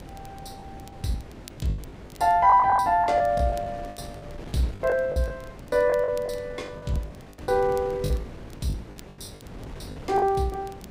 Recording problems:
wind on the microphone; below 460 Hz, SNR 17 dB
crackle; vinyl, SNR 29 dB
packet loss; 14% of the sound replaced, filled with the last packet

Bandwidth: 15.5 kHz